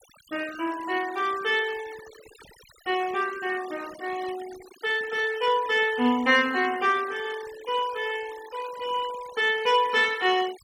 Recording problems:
denoising artefacts; signal-to-artefact ratio 18 dB

